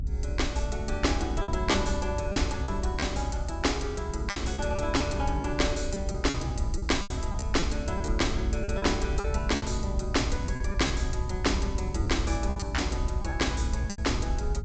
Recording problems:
treble missing; nothing above 8 kHz
electrical hum; 50 Hz, harmonics up to 750 Hz, SNR 18 dB
rumble; below 72 Hz, SNR 4 dB
wind on the microphone; below 82 Hz, SNR 7 dB
packet loss; 8% of the sound replaced, filled with repeated pitch periods

